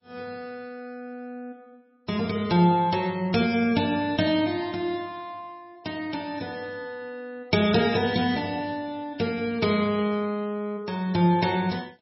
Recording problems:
codec artefacts; MP3, log-spectral distance 3 dB, nothing above 5.5 kHz

